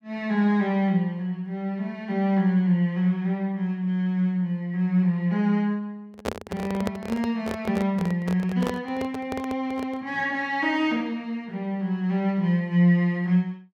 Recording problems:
handling noise; from 6 to 10 s; peak +1 dB vs average level

